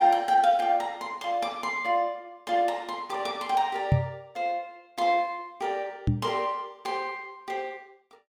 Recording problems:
knock on the microphone; at 4 s and at 6 s; peak +9 dB vs average level

